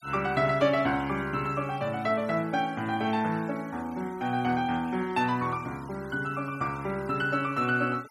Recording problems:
denoising artefacts; signal-to-artefact ratio 22 dB

